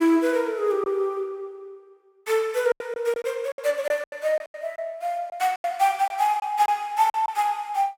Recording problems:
packet loss; 9% of the sound replaced, filled with silence

